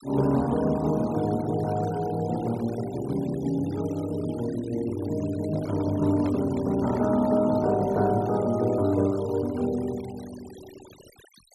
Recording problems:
noise reduction artefacts; signal-to-artefact ratio 21 dB
handling noise; from 5.5 to 7.5 s; peak -6 dB vs average level

